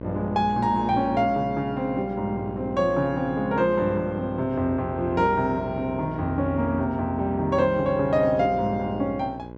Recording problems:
hum; 60 Hz, harmonics up to 1.5 kHz, SNR 12 dB

